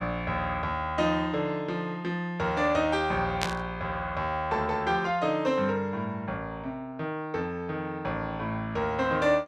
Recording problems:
burst of static; at 3.5 s; peak +4 dB vs average level

